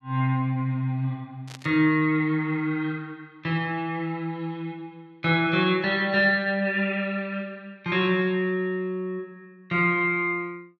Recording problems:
burst of static; at 1.5 s; peak -12 dB vs average level

